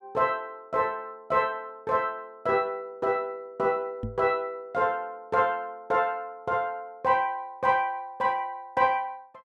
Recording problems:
knock on the microphone; at 4 s; peak -2 dB vs average level

